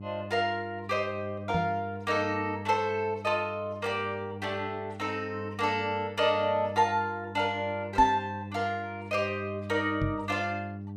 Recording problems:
hum; 50 Hz, harmonics up to 700 Hz, SNR 12 dB
knock on the microphone; at 1.5 s, at 8 s and at 10 s; peak +2 dB vs average level

